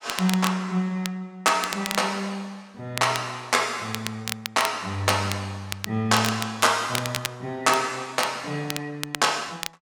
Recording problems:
crackle; vinyl, SNR 8 dB

